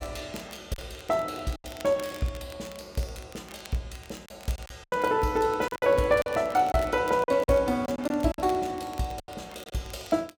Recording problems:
crackle; vinyl, SNR 21 dB
lost packets; 8% of the sound replaced, filled with silence

